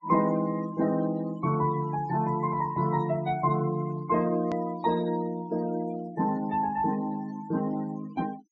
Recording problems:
treble cut off; nothing above 8 kHz
noise reduction artefacts; signal-to-artefact ratio 19 dB
edit click; at 4.5 s

